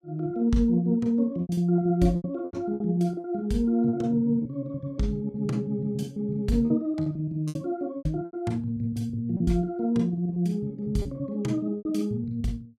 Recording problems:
packet loss; 9% of the sound replaced, filled with repeated pitch periods

